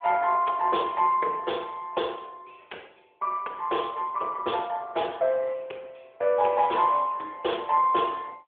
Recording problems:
telephone audio; 300 Hz to 3.5 kHz, AMR-NB

